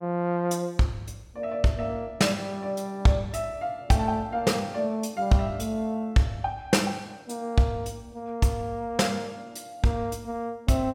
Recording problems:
none

